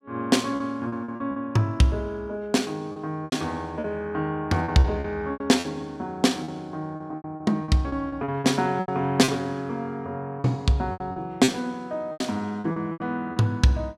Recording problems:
packet loss; 12% of the sound replaced, filled with repeated pitch periods

